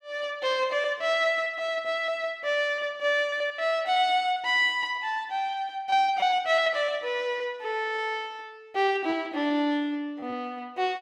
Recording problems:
packet loss; 5% of the sound replaced, filled with repeated pitch periods

